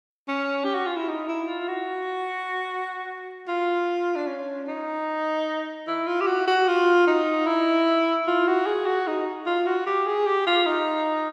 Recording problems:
none

